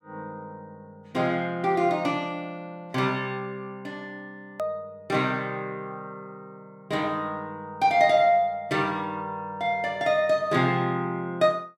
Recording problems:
hard cut with a click; at 4.5 s

